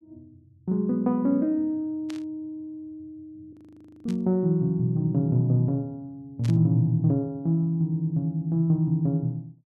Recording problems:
burst of static; at 2 s, at 4 s and at 6.5 s; peak -13 dB vs average level
audio freezing; at 3.5 s for 0.5 s

